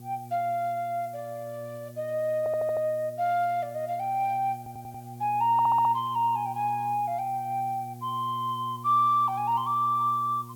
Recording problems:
electrical hum; 60 Hz, harmonics up to 720 Hz, SNR 18 dB
hiss; slope +2 dB per octave, SNR 27 dB
stutter; at 2.5 s, at 4.5 s and at 5.5 s

